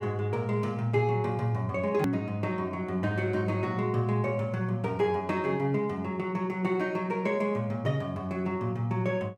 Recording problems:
edit click; at 2 s

